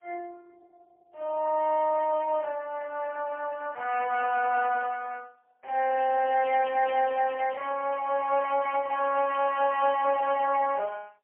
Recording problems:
phone line; 320 Hz to 2.7 kHz, AMR-NB, then MP3

